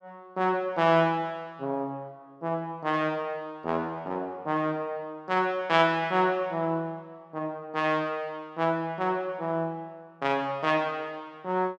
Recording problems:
none

